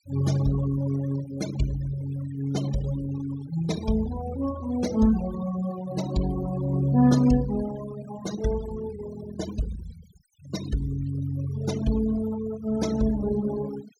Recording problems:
denoising artefacts; signal-to-artefact ratio 14 dB

